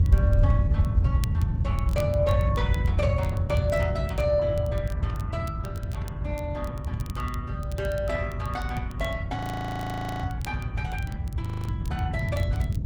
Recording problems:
lossy compression; Opus, log-spectral distance 2 dB, nothing above 20.1 kHz
low-frequency rumble; below 110 Hz, SNR -6 dB
crackling; vinyl, SNR 19 dB
audio freezing; at 9.5 s for 1 s and at 11 s

